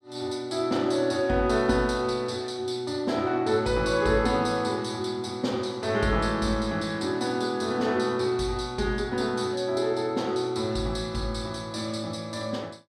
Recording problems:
none

